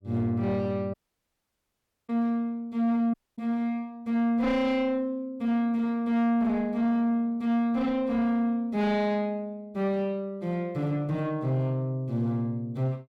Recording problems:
distorted audio; soft clipping, signal-to-distortion ratio 11 dB
audio cutting out; at 1 s for 1 s and at 3 s

